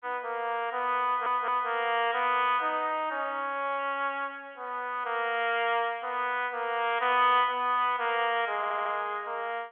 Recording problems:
telephone audio; 340 Hz to 3.4 kHz, G.711
audio stuttering; at 1 s and at 8.5 s

